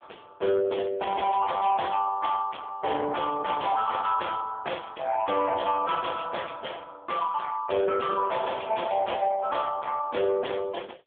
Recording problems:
telephone audio; 340 Hz to 3 kHz, AMR-NB
distorted audio; soft clipping, signal-to-distortion ratio 10 dB

